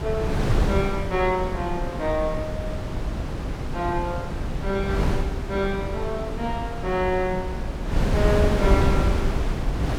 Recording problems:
wind on the microphone; below 250 Hz, SNR 0 dB

